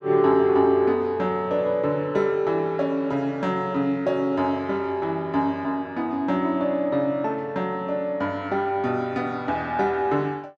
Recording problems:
none

